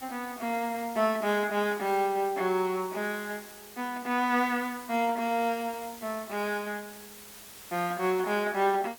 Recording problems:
background hiss; slope -1 dB per octave, SNR 16 dB

